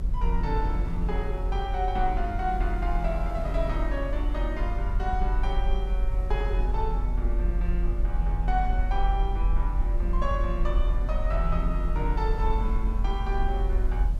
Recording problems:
hiss; SNR 21 dB
low-frequency rumble; below 46 Hz, strongest tone 42 Hz, SNR -3 dB
wind noise; below 210 Hz, SNR 11 dB

